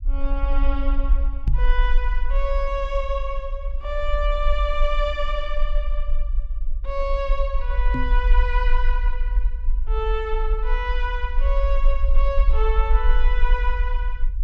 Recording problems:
low-frequency rumble; below 44 Hz, SNR -4 dB
microphone thump; at 1.5 s and at 8 s; peak +7 dB vs average level

